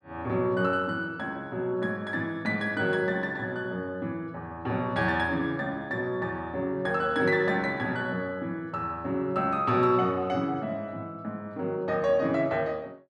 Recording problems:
none

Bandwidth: 12.5 kHz